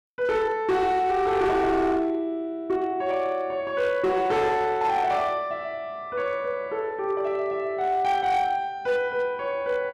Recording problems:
distorted audio; hard clipping, signal-to-distortion ratio 12 dB

